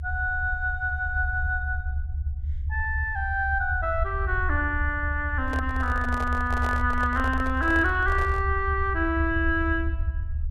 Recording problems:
low-frequency rumble; below 78 Hz, SNR 4 dB
handling noise; from 5.5 to 8.5 s; peak -5 dB vs average level

